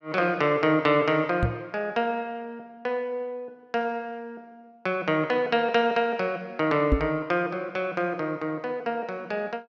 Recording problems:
microphone thump; at 1.5 s and at 7 s; peak +7 dB vs average level

